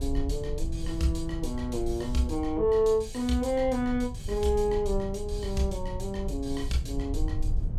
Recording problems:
rumble; below 74 Hz, SNR 7 dB

